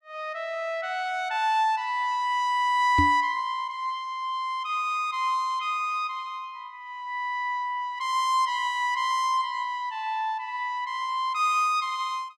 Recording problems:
microphone bump; at 3 s; peak +4 dB vs average level

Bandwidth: 14.5 kHz